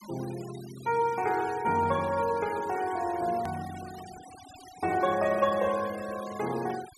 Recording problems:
noise reduction artefacts; signal-to-artefact ratio 17 dB
hard cut with a click; at 3.5 s

